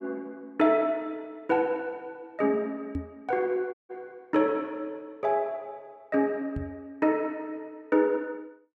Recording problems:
knock on the microphone; at 3 s and at 6.5 s; peak -1 dB vs average level
dropout; at 3.5 s

